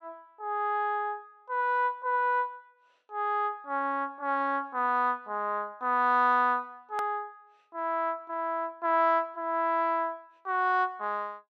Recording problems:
edit click; at 7 s

